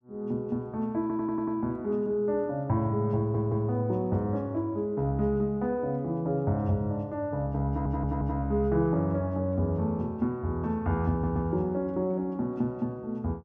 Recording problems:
audio stuttering; 4 times, first at 1 s

